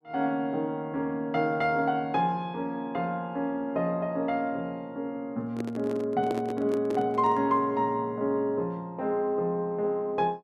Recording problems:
microphone handling noise; from 5.5 to 7.5 s; peak 0 dB vs average level

